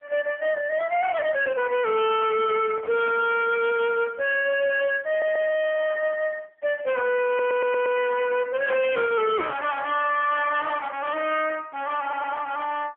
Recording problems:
phone line; 320 Hz to 3.5 kHz, AMR-NB
distorted audio; hard clipping, uneven, signal-to-distortion ratio 8 dB
handling noise; from 2 to 3.5 s; peak -7 dB vs average level
stutter; at 5 s, at 7.5 s and at 12 s

